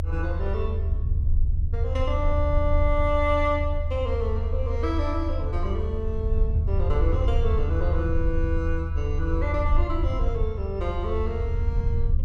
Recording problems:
low-frequency rumble; below 80 Hz, strongest tone 26 Hz, SNR -3 dB

